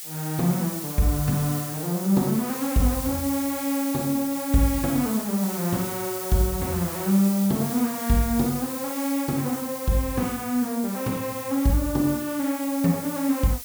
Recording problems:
hiss; slope +4 dB per octave, SNR 8 dB

